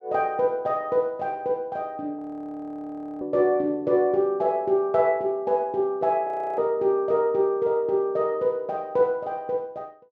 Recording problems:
audio freezing; at 2 s for 1 s and at 6.5 s

